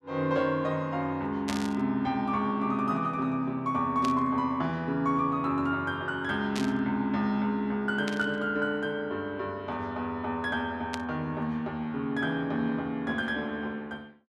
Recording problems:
burst of static; 5 times, first at 1.5 s; peak -2 dB vs average level

